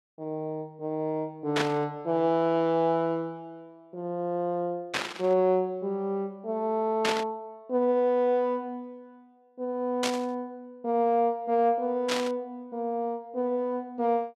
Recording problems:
burst of static; 5 times, first at 1.5 s; peak +4 dB vs average level

